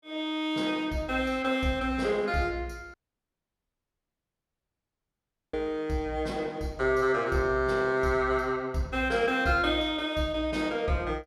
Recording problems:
audio cutting out; at 3 s for 2.5 s

